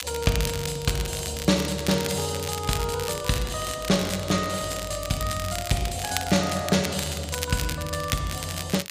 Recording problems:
crackle; vinyl, SNR 8 dB

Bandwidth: 15 kHz